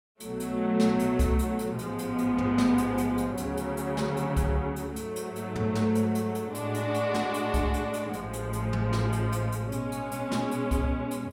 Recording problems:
none

